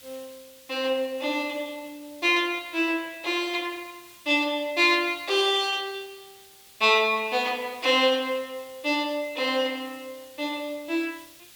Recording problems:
background hiss; SNR 23 dB

